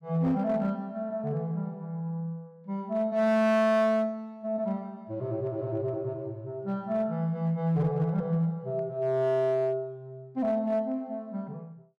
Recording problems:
distorted audio; hard clipping, uneven, signal-to-distortion ratio 11 dB

